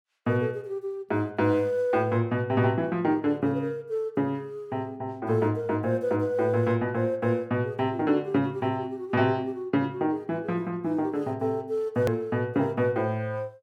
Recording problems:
edit click; at 12 s

